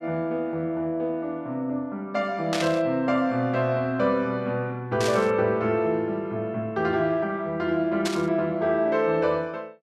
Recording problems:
static burst; at 2.5 s, at 5 s and at 8 s; peak 0 dB vs average level

